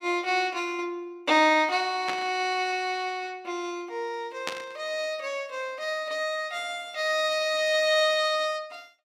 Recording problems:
burst of static; at 2 s and at 4.5 s; peak 0 dB vs average level

